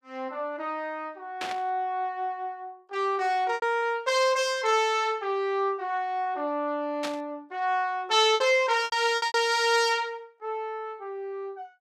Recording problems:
packet loss; 4% of the sound replaced, filled with repeated pitch periods
burst of static; at 1.5 s and at 7 s; peak -3 dB vs average level

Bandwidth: 15 kHz